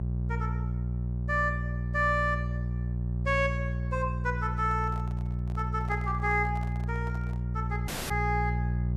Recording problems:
hum; 60 Hz, harmonics up to 420 Hz, SNR 1 dB
microphone handling noise; from 4.5 to 7.5 s; peak -12 dB vs average level
dropout; at 8 s

